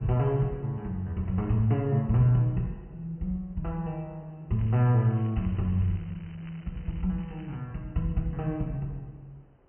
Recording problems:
treble missing; nothing above 3.1 kHz
wind noise; below 600 Hz, SNR 29 dB
crackle; from 4.5 to 7 s and at 7 s; loose cable, SNR 28 dB

